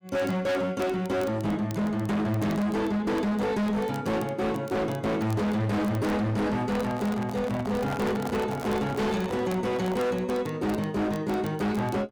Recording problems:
distortion; hard clipping, signal-to-distortion ratio 6 dB
crackling; vinyl, SNR 24 dB
microphone handling noise; from 6.5 to 10 s; peak -2 dB vs average level

